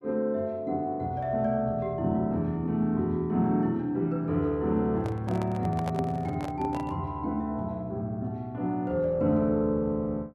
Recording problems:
handling noise; from 5 to 7 s; peak -4 dB vs average level

